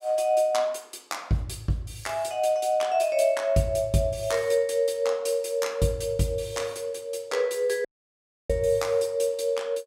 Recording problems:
dropout; at 8 s for 0.5 s

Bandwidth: 16.5 kHz